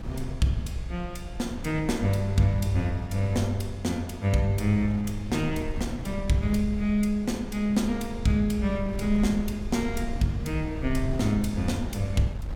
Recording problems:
wind on the microphone; below 100 Hz, SNR 10 dB

